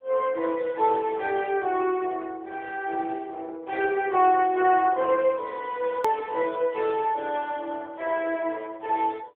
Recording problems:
phone line; 300 Hz to 3.4 kHz, AMR-NB
edit click; at 6 s

